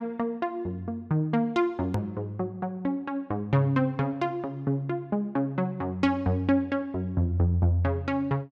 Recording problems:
hard cut with a click; at 2 s

